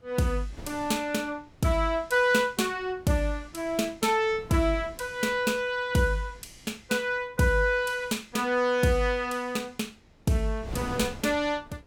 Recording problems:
wind on the microphone; below 380 Hz, SNR 18 dB

